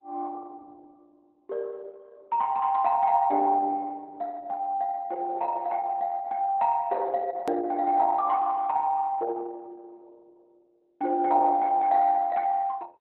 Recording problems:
lossy codec; Opus, log-spectral distance 2 dB
hard cut with a click; at 7.5 s

